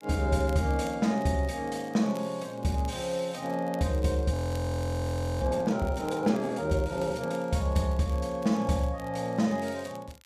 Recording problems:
crackle; vinyl, SNR 25 dB
audio freezing; at 4.5 s for 1 s

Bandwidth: 14.5 kHz